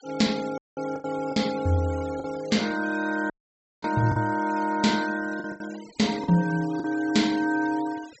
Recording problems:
low-pass filter; nothing above 7.8 kHz
noise reduction artefacts; signal-to-artefact ratio 18 dB
packet loss; 7% of the sound replaced, filled with the last packet
dropout; at 0.5 s and at 3.5 s for 0.5 s

